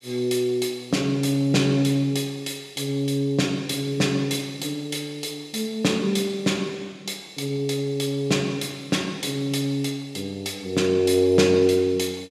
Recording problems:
none

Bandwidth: 14.5 kHz